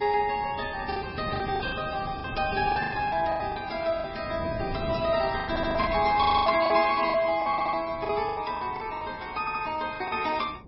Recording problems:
lossy codec; MP3, log-spectral distance 4 dB, nothing above 5.3 kHz
wind on the microphone; below 310 Hz, SNR 14 dB
packet loss; 12% of the sound replaced, filled with the last packet
audio stuttering; 4 times, first at 5.5 s

